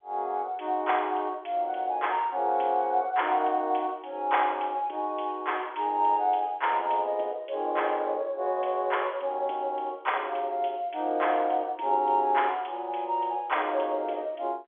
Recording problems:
phone line; 280 Hz to 3.5 kHz, G.711

